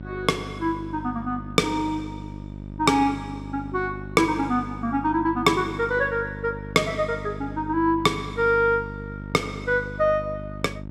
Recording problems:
hum; 50 Hz, harmonics up to 650 Hz, SNR 12 dB

